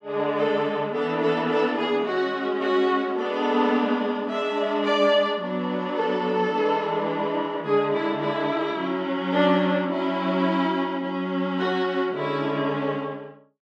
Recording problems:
none

